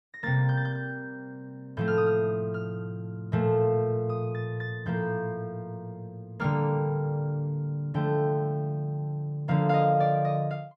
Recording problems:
none

